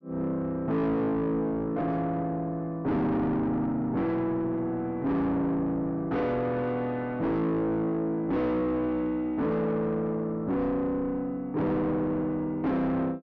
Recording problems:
treble cut off; nothing above 6.2 kHz
distorted audio; soft clipping, signal-to-distortion ratio 6 dB

